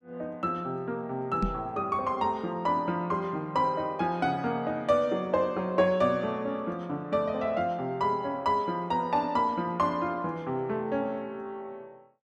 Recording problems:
microphone bump; at 1.5 s; peak +4 dB vs average level

